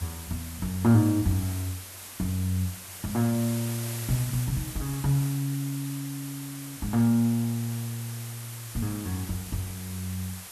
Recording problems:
hiss; slope 0 dB per octave, SNR 10 dB

